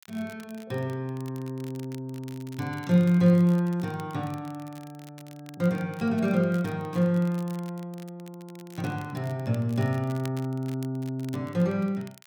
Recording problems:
crackle; vinyl, SNR 24 dB

